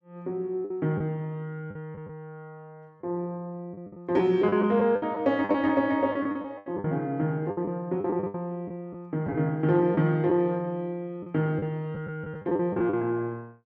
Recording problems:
packet loss; 10% of the sound replaced, filled with the last packet

